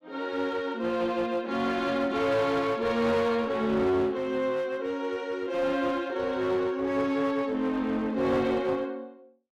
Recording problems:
distorted audio; hard clipping, uneven, signal-to-distortion ratio 10 dB

